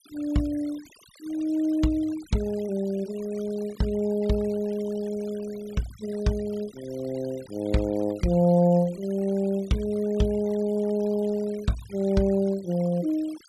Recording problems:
denoising artefacts; signal-to-artefact ratio 22 dB

